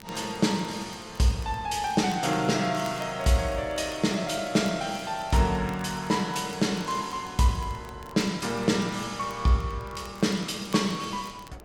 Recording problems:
wind noise; below 770 Hz, SNR 23 dB
crackling; vinyl, SNR 25 dB

